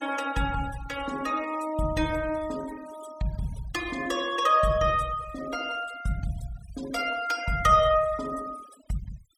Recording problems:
denoising artefacts; signal-to-artefact ratio 19 dB

